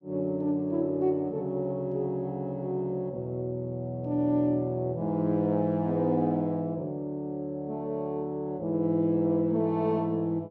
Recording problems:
none

